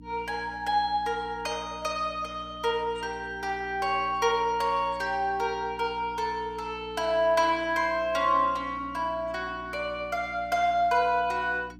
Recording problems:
hum; 60 Hz, harmonics up to 300 Hz, SNR 19 dB

